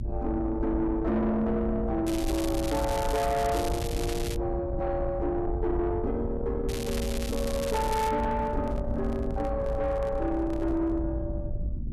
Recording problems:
distorted audio; soft clipping, signal-to-distortion ratio 12 dB
electrical hum; 60 Hz, harmonics up to 360 Hz, SNR 17 dB
low-frequency rumble; below 120 Hz, SNR 6 dB
crackle; from 2 to 4.5 s and from 6.5 to 8 s; loose cable, SNR 9 dB
handling noise; from 7.5 to 11 s; peak -10 dB vs average level

